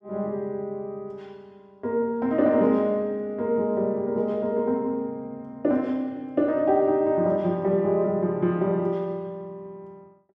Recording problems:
none

